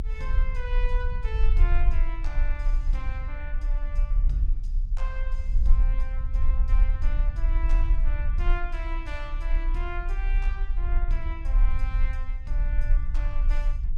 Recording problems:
rumble; below 42 Hz, SNR -12 dB

